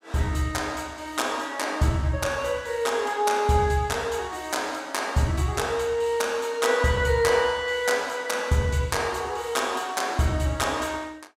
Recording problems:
none

